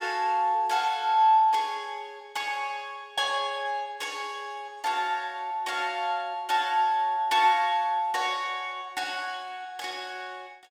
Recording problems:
none

